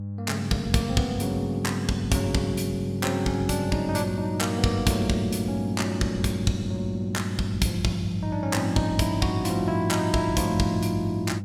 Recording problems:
hum; 50 Hz, harmonics up to 500 Hz, SNR 7 dB

